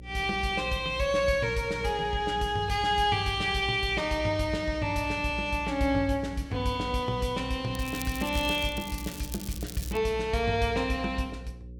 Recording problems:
mains hum; 60 Hz, harmonics up to 540 Hz, SNR 16 dB
crackle; from 7.5 to 10 s; loose cable, SNR 14 dB

